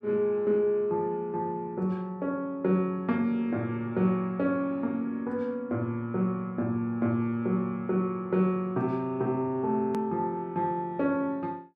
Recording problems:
hard cut with a click; at 10 s

